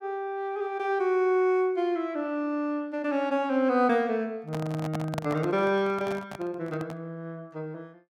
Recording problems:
handling noise; from 4.5 to 7 s; peak -1 dB vs average level

